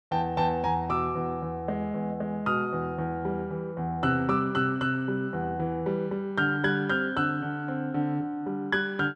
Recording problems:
none

